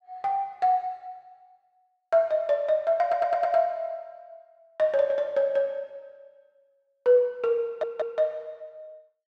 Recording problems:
audio stuttering; at 3 s and at 7.5 s

